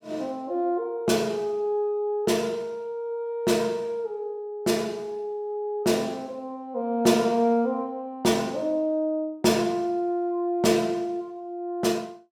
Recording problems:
none

